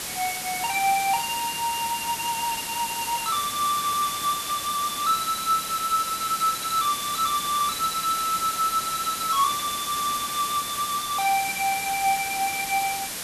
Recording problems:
hiss; slope 0 dB per octave, SNR 4 dB

